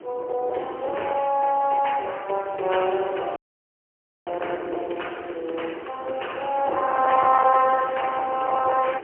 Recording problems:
phone line; 300 Hz to 3.2 kHz, AMR-NB, then MP3
distorted audio; hard clipping, uneven, signal-to-distortion ratio 15 dB
hiss; SNR 28 dB
wind on the microphone; below 1 kHz, SNR 11 dB
audio freezing; at 3.5 s for 1 s

